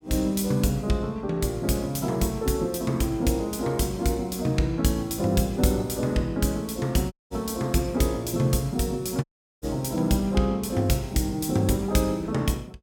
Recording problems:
dropout; at 7 s and at 9 s

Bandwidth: 17 kHz